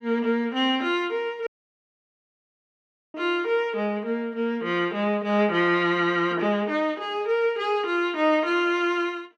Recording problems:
audio cutting out; at 1.5 s for 1.5 s

